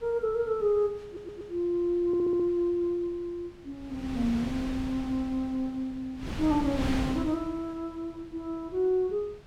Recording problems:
wind on the microphone; below 490 Hz, SNR 9 dB
stutter; at 1 s and at 2 s

